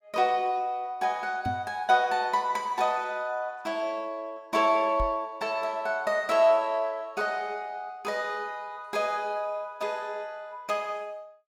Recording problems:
microphone thump; at 1.5 s and at 5 s; peak -2 dB vs average level

